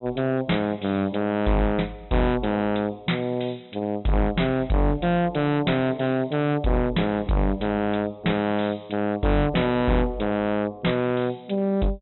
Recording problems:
treble cut off; nothing above 3.9 kHz
distortion; hard clipping, signal-to-distortion ratio 6 dB

